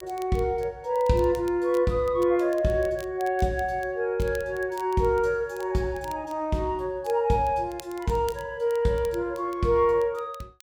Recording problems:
crackling; vinyl, SNR 25 dB

